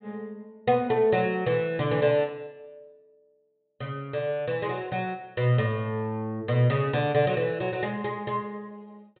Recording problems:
low-pass filter; nothing above 4 kHz

